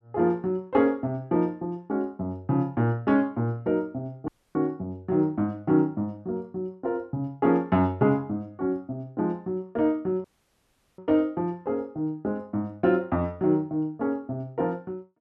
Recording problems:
audio cutting out; at 4.5 s and at 10 s for 0.5 s

